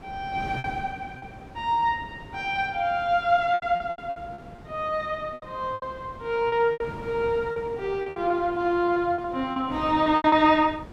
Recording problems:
wind on the microphone; below 540 Hz, SNR 17 dB
lost packets; 11% of the sound replaced, filled with repeated pitch periods

